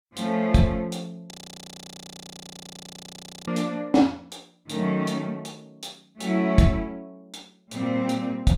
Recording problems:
audio freezing; at 1.5 s for 2 s

